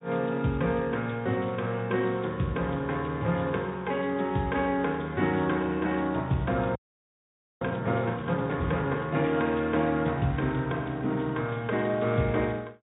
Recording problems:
low-pass filter; nothing above 3.8 kHz
codec artefacts; Speex, log-spectral distance 4 dB
frozen audio; at 7 s for 1 s

